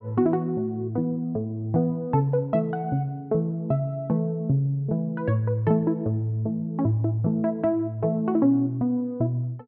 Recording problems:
none

